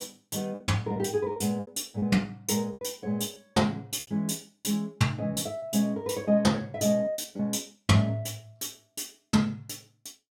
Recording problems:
lost packets; 6% of the sound replaced, filled with repeated pitch periods

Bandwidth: 16.5 kHz